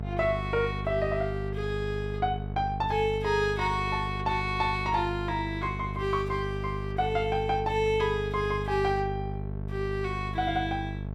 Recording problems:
electrical hum; 50 Hz, harmonics up to 900 Hz, SNR 6 dB

